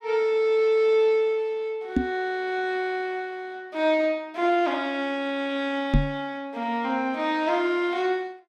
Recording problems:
microphone thump; at 2 s and at 6 s; peak +7 dB vs average level

